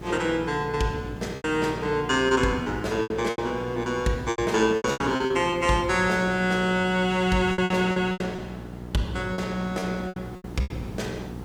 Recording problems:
hum; 60 Hz, harmonics up to 900 Hz, SNR 14 dB
background hiss; slope -7 dB per octave, SNR 18 dB
packet loss; 11% of the sound replaced, filled with repeated pitch periods

